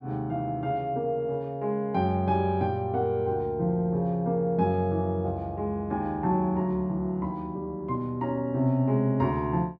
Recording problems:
none

